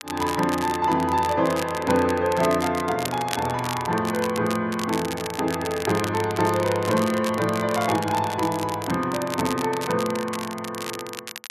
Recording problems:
crackle; vinyl, SNR 11 dB

